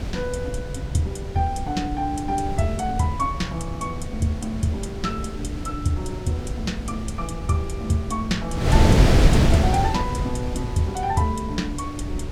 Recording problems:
low-frequency rumble; below 100 Hz, SNR 10 dB
wind on the microphone; below 230 Hz, SNR 0 dB

